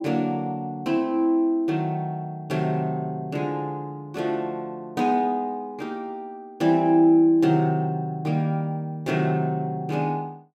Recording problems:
none

